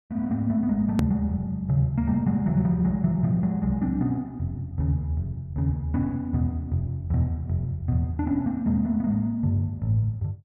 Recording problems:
edit click; at 1 s

